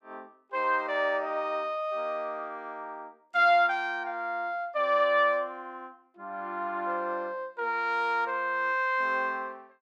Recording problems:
none

